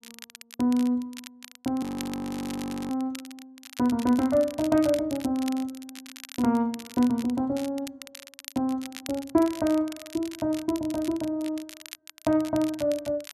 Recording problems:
crackling; vinyl, SNR 16 dB
frozen audio; at 2 s for 1 s

